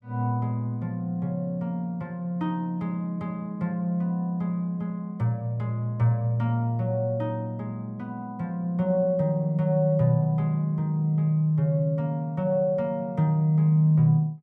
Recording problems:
none

